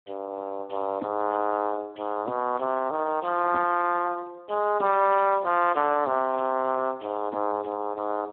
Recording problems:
telephone audio; 220 Hz to 3.3 kHz, Speex

